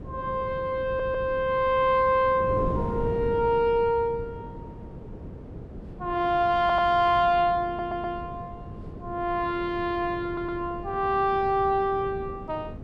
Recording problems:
wind on the microphone; below 330 Hz, SNR 13 dB
audio stuttering; 4 times, first at 1 s

